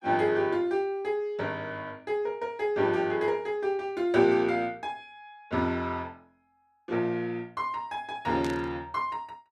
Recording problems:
burst of static; at 8.5 s; peak -7 dB vs average level

